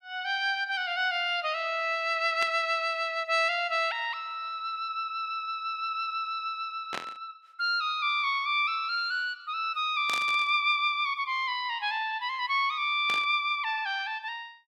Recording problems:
static burst; 4 times, first at 2.5 s; peak -3 dB vs average level

